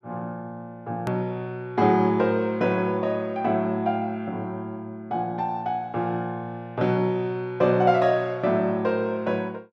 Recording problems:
click at an edit; at 1 s

